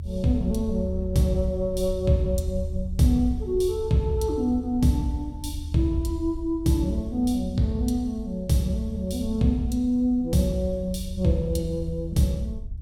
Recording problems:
rumble; below 78 Hz, SNR 10 dB

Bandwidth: 17 kHz